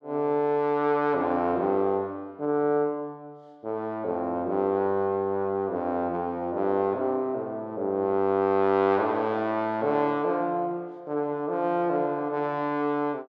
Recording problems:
none

